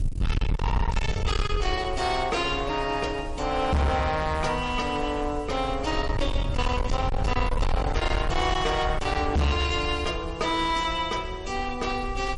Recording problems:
codec artefacts; MP3, log-spectral distance 3 dB, nothing above 10.4 kHz
distorted audio; hard clipping, uneven, signal-to-distortion ratio 6 dB
hiss; SNR 25 dB
wind on the microphone; below 98 Hz, SNR 5 dB

